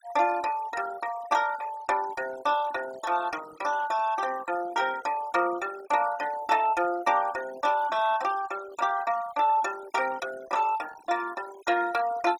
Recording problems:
denoising artefacts; signal-to-artefact ratio 17 dB

